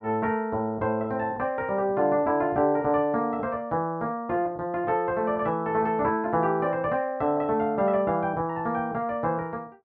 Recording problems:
none

